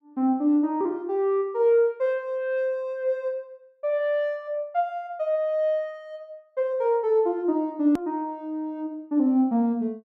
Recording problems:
hard cut with a click; at 8 s

